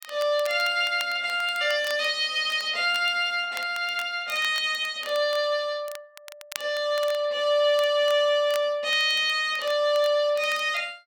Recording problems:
crackling; vinyl, SNR 19 dB

